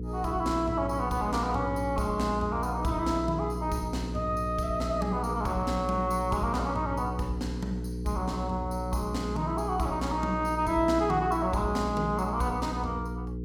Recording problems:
electrical hum; 60 Hz, harmonics up to 480 Hz, SNR 5 dB

